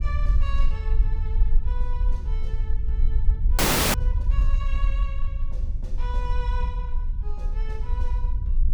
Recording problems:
rumble; below 52 Hz, strongest tone 22 Hz, SNR -14 dB
frozen audio; at 3.5 s

